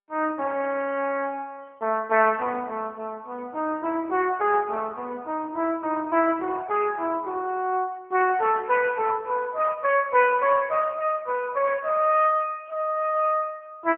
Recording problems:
phone line; 280 Hz to 3.1 kHz, AMR-NB

